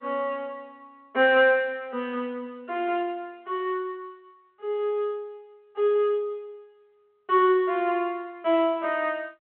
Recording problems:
telephone audio; 260 Hz to 3.3 kHz, G.726

